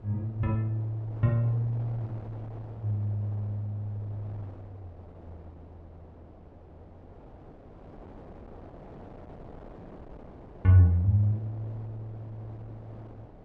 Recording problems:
wind on the microphone; below 610 Hz, SNR 20 dB

